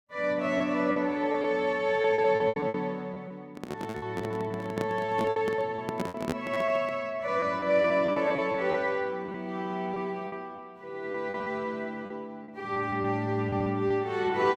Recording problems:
packet loss; 11% of the sound replaced, filled with repeated pitch periods
handling noise; from 3.5 to 7 s; peak +2 dB vs average level

